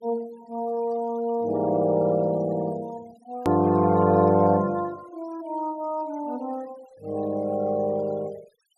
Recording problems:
denoising artefacts; signal-to-artefact ratio 27 dB
hard cut with a click; at 3.5 s

